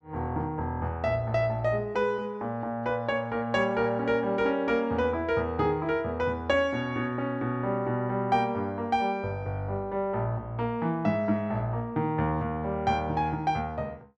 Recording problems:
none

